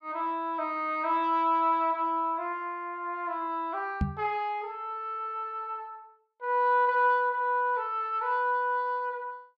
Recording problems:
microphone thump; at 4 s; peak +4 dB vs average level

